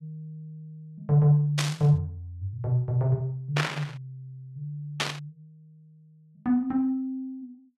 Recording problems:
burst of static; at 1.5 s, at 3.5 s and at 5 s; peak +4 dB vs average level

